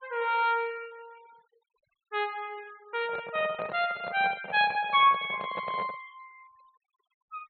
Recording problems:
treble cut off; nothing above 4.2 kHz
denoising artefacts; signal-to-artefact ratio 26 dB
handling noise; from 3 to 6 s; peak -6 dB vs average level

